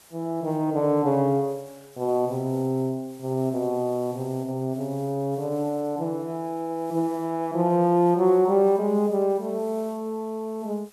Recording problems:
background hiss; slope -1 dB per octave, SNR 27 dB

